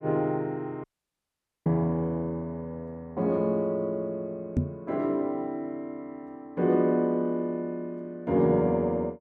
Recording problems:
dropout; at 1 s for 1 s
microphone bump; at 4.5 s; peak +6 dB vs average level

